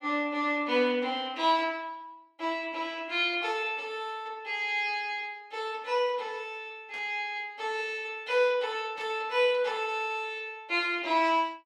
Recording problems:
static burst; at 7 s and at 9 s; peak -14 dB vs average level

